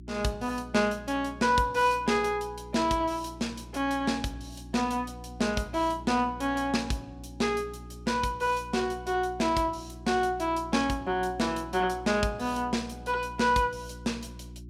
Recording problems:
hum; 60 Hz, harmonics up to 360 Hz, SNR 17 dB

